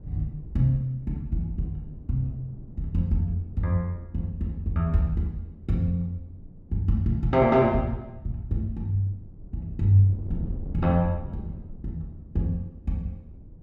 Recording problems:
wind on the microphone; below 150 Hz, SNR 17 dB

